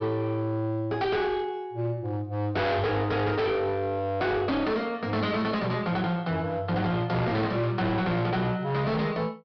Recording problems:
low-pass filter; nothing above 5.5 kHz
distorted audio; hard clipping, uneven, signal-to-distortion ratio 7 dB

